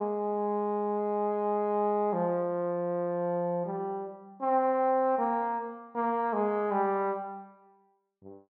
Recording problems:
none

